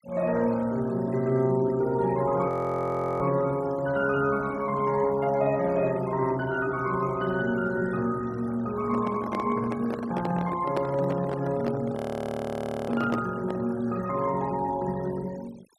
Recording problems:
denoising artefacts; signal-to-artefact ratio 21 dB
audio freezing; at 2.5 s for 0.5 s and at 12 s for 1 s
handling noise; from 9 to 14 s; peak 0 dB vs average level

